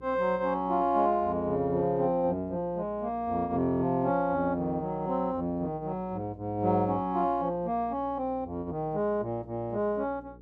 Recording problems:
hum; 60 Hz, harmonics up to 480 Hz, SNR 22 dB

